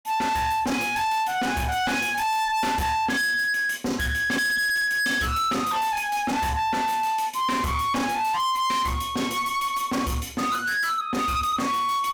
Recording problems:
distorted audio; hard clipping, signal-to-distortion ratio 6 dB

